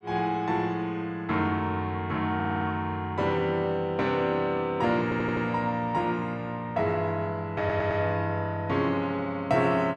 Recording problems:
stutter; at 2.5 s, at 5 s and at 7.5 s

